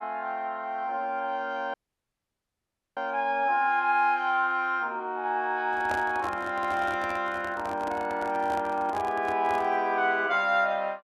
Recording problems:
dropout; at 1.5 s for 1 s
microphone handling noise; from 5.5 to 10 s; peak -4 dB vs average level

